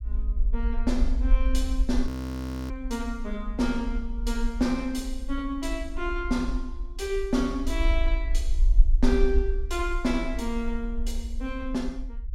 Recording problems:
low-frequency rumble; below 48 Hz, SNR 1 dB
audio freezing; at 2 s for 0.5 s

